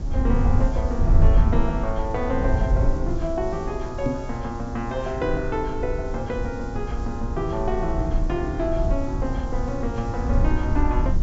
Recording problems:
treble cut off; nothing above 8 kHz
background hiss; slope +5 dB per octave, SNR 24 dB
rumble; below 82 Hz, SNR -1 dB
knock on the microphone; at 4 s; peak +6 dB vs average level

